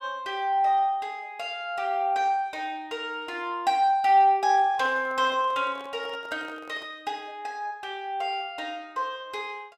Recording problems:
handling noise; from 4.5 to 7 s; peak -12 dB vs average level

